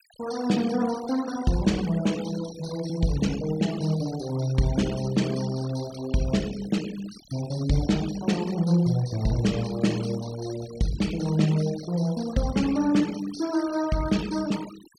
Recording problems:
denoising artefacts; signal-to-artefact ratio 16 dB

